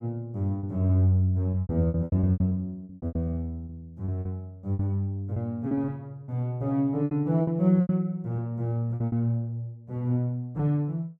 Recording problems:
lost packets; 12% of the sound replaced, filled with repeated pitch periods

